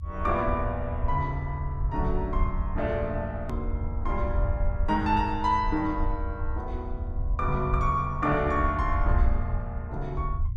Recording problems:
low-frequency rumble; below 78 Hz, SNR 3 dB
click at an edit; at 3.5 s

